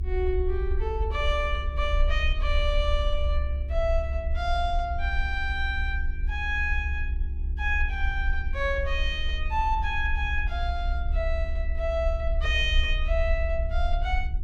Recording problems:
hum; 50 Hz, harmonics up to 400 Hz, SNR 19 dB
low-frequency rumble; below 66 Hz, SNR 0 dB

